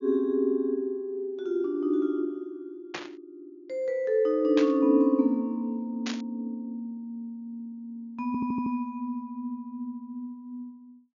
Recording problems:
low-pass filter; nothing above 7 kHz
static burst; at 3 s, at 4.5 s and at 6 s; peak -2 dB vs average level
stutter; at 8.5 s

